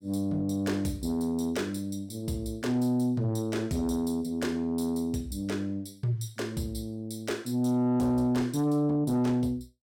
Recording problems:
distorted audio; soft clipping, signal-to-distortion ratio 11 dB

